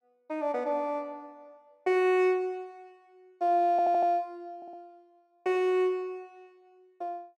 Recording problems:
audio stuttering; at 3.5 s and at 4.5 s

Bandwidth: 13.5 kHz